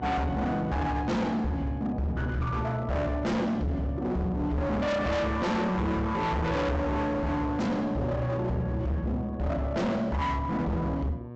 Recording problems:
treble cut off; nothing above 8 kHz
distortion; hard clipping, signal-to-distortion ratio 6 dB
hum; 60 Hz, harmonics up to 1.2 kHz, SNR 14 dB

